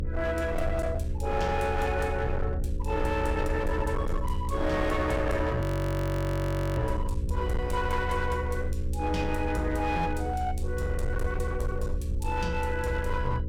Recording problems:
distortion; hard clipping, signal-to-distortion ratio 10 dB
electrical hum; 60 Hz, harmonics up to 540 Hz, SNR 9 dB
rumble; below 76 Hz, SNR 3 dB
frozen audio; at 5.5 s for 1 s

